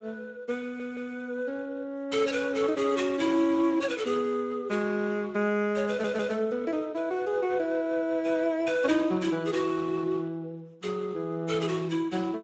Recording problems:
codec artefacts; Speex, log-spectral distance 3 dB, nothing above 7.8 kHz
stutter; at 0.5 s and at 6 s

